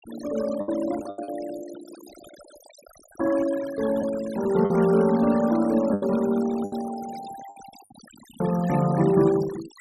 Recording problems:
noise reduction artefacts; signal-to-artefact ratio 18 dB
packet loss; 6% of the sound replaced, filled with the last packet

